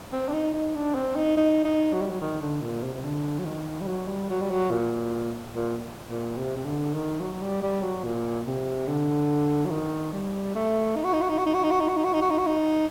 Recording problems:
background hiss; slope -6 dB per octave, SNR 16 dB

